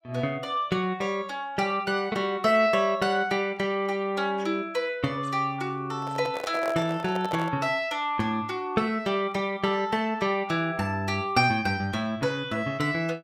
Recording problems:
handling noise; from 6 to 7.5 s; peak -3 dB vs average level

